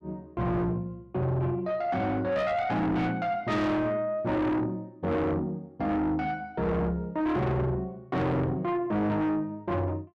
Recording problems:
distorted audio; soft clipping, signal-to-distortion ratio 7 dB

